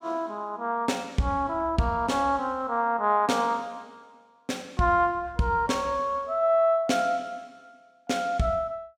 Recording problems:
none

